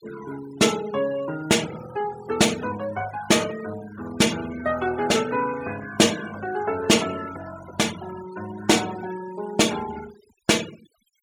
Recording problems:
noise reduction artefacts; signal-to-artefact ratio 16 dB

